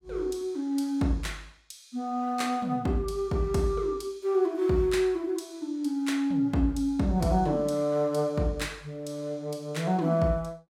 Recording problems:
none

